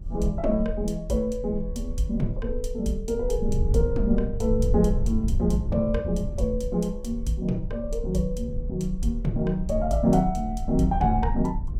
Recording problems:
rumble; below 74 Hz, SNR 5 dB

